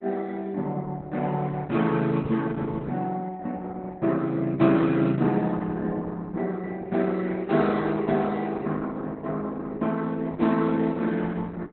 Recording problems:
lossy codec; Opus, log-spectral distance 3 dB, nothing above 4 kHz

